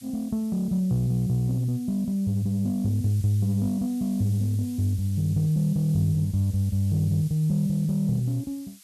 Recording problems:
background hiss; SNR 23 dB

